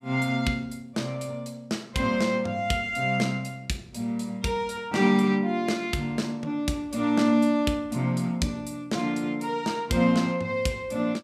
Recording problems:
none

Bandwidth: 15 kHz